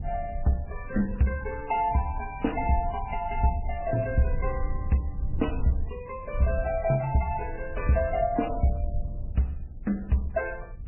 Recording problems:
lossy compression; MP3, then Vorbis, log-spectral distance 2 dB, nothing above 2.4 kHz
rumble; below 68 Hz, SNR 9 dB

